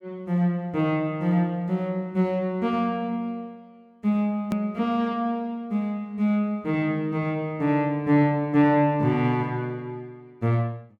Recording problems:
edit click; at 4.5 s

